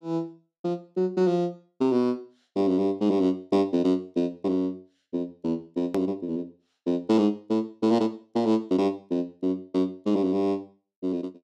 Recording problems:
edit click; at 6 s

